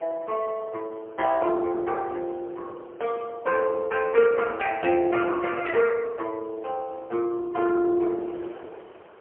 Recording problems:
phone line; 300 Hz to 2.6 kHz, AMR-NB, then MP3
wind on the microphone; below 1 kHz, SNR 23 dB

